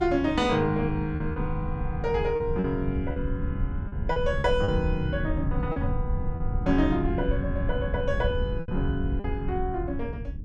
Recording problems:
low-frequency rumble; below 110 Hz, SNR 3 dB
lost packets; 5% of the sound replaced, filled with repeated pitch periods

